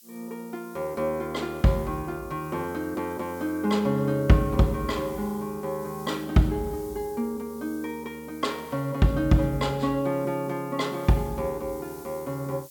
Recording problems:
hiss; slope +8 dB per octave, SNR 21 dB

